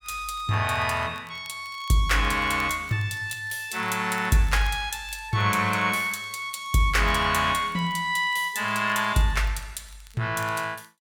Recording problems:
crackle; vinyl, SNR 28 dB

